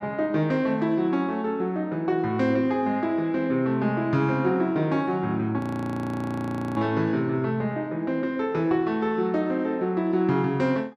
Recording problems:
frozen audio; at 5.5 s for 1 s

